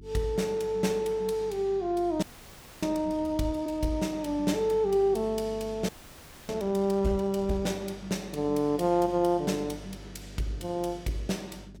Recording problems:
hum; 50 Hz, harmonics up to 400 Hz, SNR 20 dB
frozen audio; at 2 s for 0.5 s and at 6 s for 0.5 s

